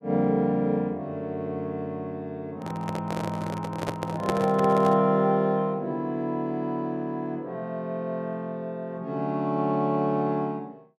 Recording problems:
handling noise; from 2.5 to 5 s; peak +4 dB vs average level

